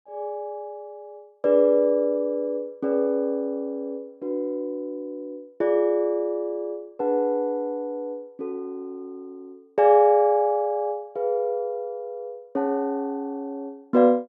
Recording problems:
none

